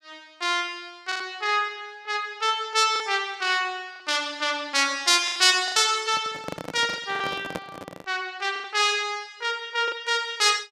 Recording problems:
packet loss; 6% of the sound replaced, filled with the last packet
microphone handling noise; from 6 to 8 s; peak -4 dB vs average level

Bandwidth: 15 kHz